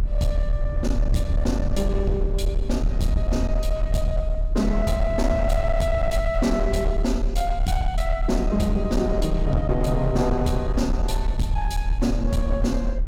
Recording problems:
distortion; hard clipping, uneven, signal-to-distortion ratio 11 dB
rumble; below 50 Hz, strongest tone 40 Hz, SNR 1 dB

